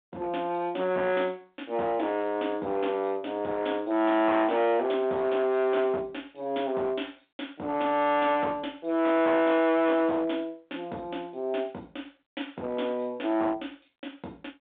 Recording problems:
telephone audio; 340 Hz to 3.5 kHz, G.726
distortion; hard clipping, signal-to-distortion ratio 9 dB

